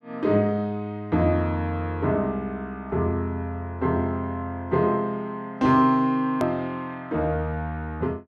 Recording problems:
hard cut with a click; at 6.5 s

